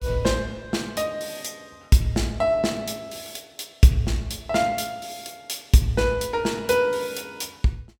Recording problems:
none

